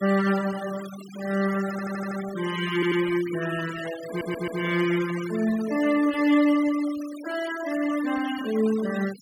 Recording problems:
noise reduction artefacts; signal-to-artefact ratio 14 dB
audio stuttering; at 1.5 s, at 2.5 s and at 4 s

